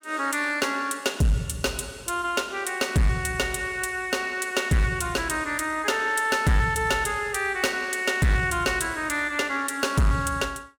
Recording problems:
distorted audio; hard clipping, signal-to-distortion ratio 11 dB

